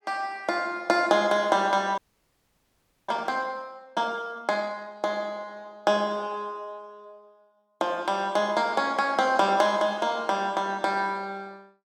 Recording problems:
audio freezing; at 2 s for 1 s

